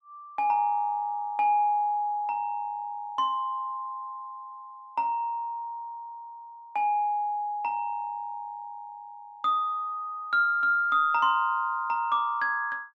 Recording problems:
none

